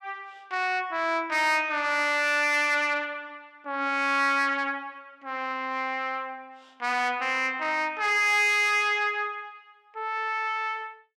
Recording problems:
distorted audio; soft clipping, signal-to-distortion ratio 12 dB

